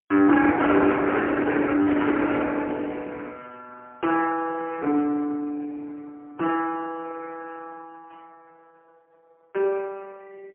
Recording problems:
phone line; 190 Hz to 3.2 kHz, AMR-NB, then MP3

